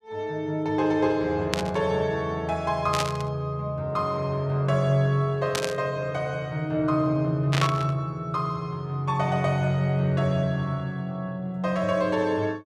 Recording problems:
burst of static; 4 times, first at 1.5 s; peak +3 dB vs average level

